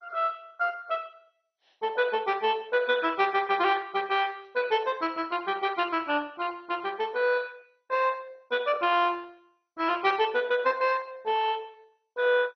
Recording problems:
codec artefacts; MP2, log-spectral distance 4 dB, nothing above 5.8 kHz

